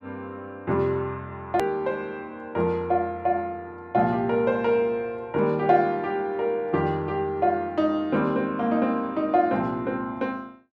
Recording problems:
click at an edit; at 1.5 s

